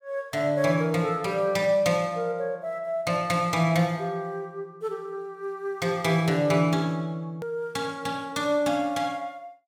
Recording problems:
hard cut with a click; at 7.5 s

